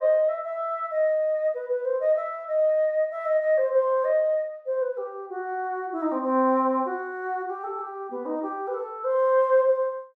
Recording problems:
none

